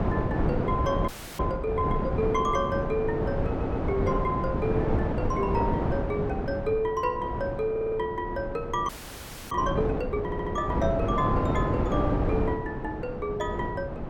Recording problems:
wind on the microphone; below 480 Hz, SNR 0 dB
frozen audio; at 1 s and at 9 s for 0.5 s
audio stuttering; at 3.5 s, at 7.5 s and at 10 s

